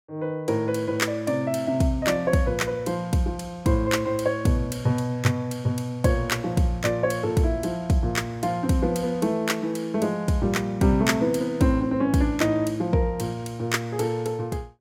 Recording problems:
none

